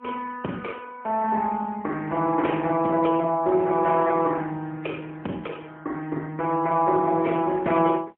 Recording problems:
telephone audio; 240 Hz to 3.3 kHz, AMR-NB, then MP3

